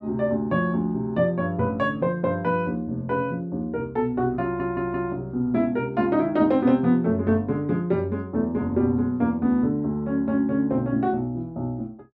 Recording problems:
stutter; at 4.5 s

